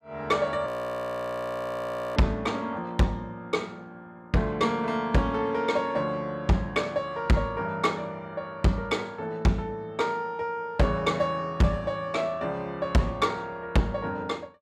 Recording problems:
distortion; hard clipping, signal-to-distortion ratio 11 dB
audio freezing; at 0.5 s for 1.5 s

